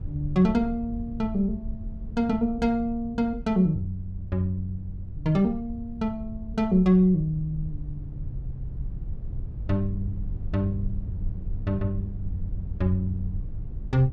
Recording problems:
wind on the microphone; below 84 Hz, SNR 10 dB

